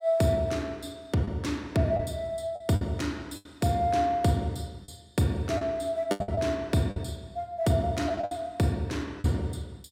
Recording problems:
packet loss; 6% of the sound replaced, filled with the last packet

